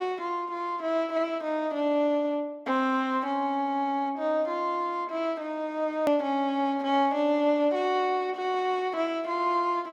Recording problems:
click at an edit; at 6 s

